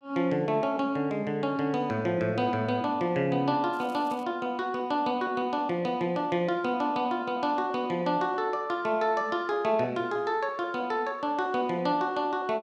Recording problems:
crackling; at 3.5 s; loose cable, SNR 28 dB

